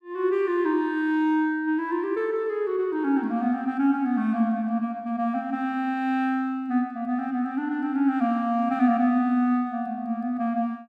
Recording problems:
none

